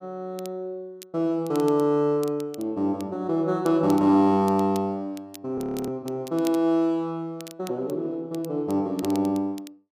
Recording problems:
crackling; vinyl, SNR 22 dB
audio freezing; at 5.5 s

